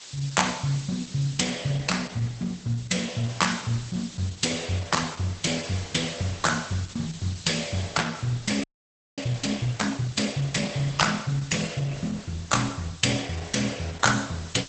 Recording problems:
codec artefacts; Opus, log-spectral distance 11 dB, nothing above 8 kHz
hiss; slope +2 dB per octave, SNR 16 dB
audio freezing; at 8.5 s for 0.5 s

